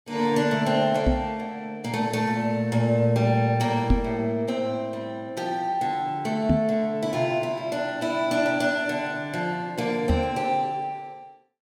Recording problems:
knock on the microphone; 4 times, first at 1 s; peak +7 dB vs average level

